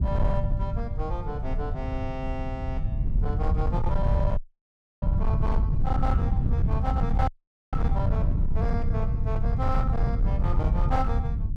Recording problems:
distortion; hard clipping, signal-to-distortion ratio 12 dB
rumble; below 100 Hz, SNR -6 dB
audio cutting out; at 4.5 s for 0.5 s and at 7.5 s

